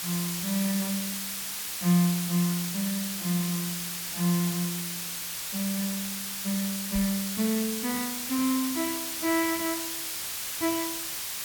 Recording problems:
background hiss; slope +2 dB per octave, SNR 2 dB
microphone bump; at 7 s; peak -5 dB vs average level

